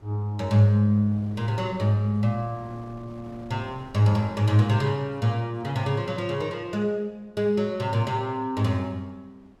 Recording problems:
wind on the microphone; below 590 Hz, SNR 24 dB

